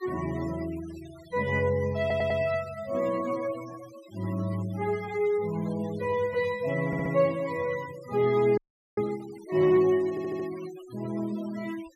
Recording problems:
denoising artefacts; signal-to-artefact ratio 19 dB
audio stuttering; at 2 s, at 7 s and at 10 s
frozen audio; at 8.5 s

